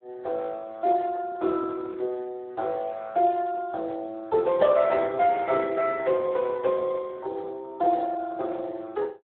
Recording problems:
phone line; 320 Hz to 2.6 kHz, Speex

